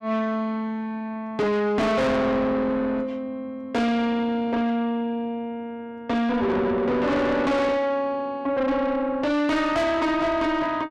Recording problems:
distortion; soft clipping, signal-to-distortion ratio 6 dB

